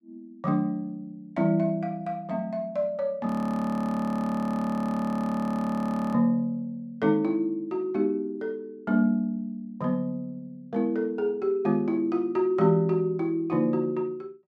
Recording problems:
frozen audio; at 3.5 s for 3 s

